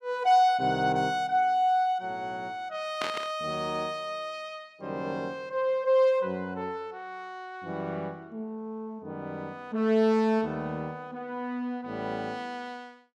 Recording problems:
static burst; at 3 s; peak -1 dB vs average level

